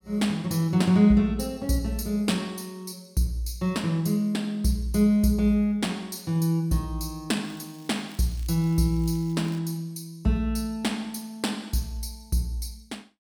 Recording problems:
crackle; from 7.5 to 9.5 s; loose cable, SNR 27 dB

